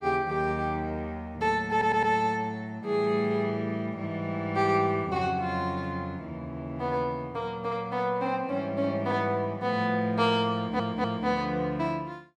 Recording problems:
audio stuttering; at 1.5 s and at 11 s

